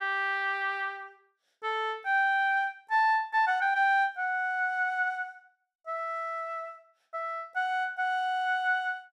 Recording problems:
none

